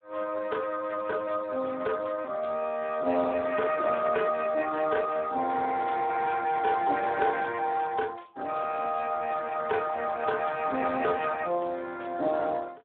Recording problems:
phone line; 220 Hz to 3.9 kHz, Speex

